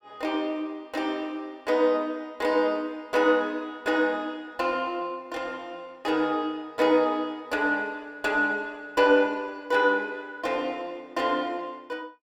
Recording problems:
none

